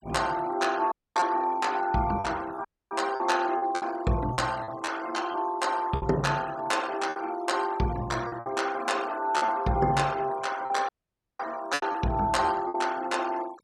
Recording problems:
denoising artefacts; signal-to-artefact ratio 19 dB
lost packets; 7% of the sound replaced, filled with repeated pitch periods
dropout; at 1 s, at 2.5 s and at 11 s for 0.5 s

